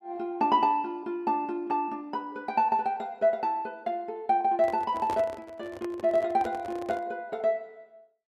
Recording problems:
handling noise; from 4.5 to 7 s; peak -4 dB vs average level

